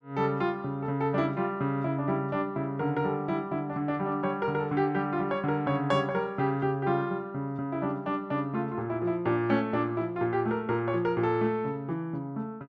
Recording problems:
none

